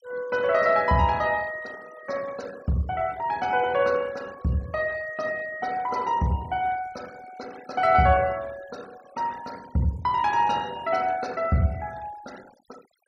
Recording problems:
noise reduction artefacts; signal-to-artefact ratio 23 dB

